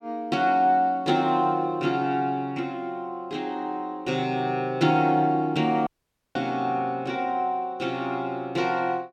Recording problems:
audio cutting out; at 6 s

